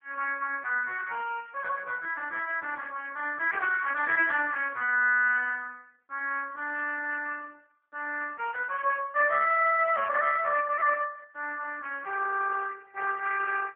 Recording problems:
telephone audio; 340 Hz to 2.7 kHz, AMR-NB

